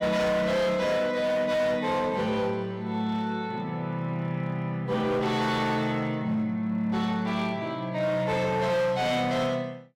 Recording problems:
distortion; hard clipping, signal-to-distortion ratio 10 dB

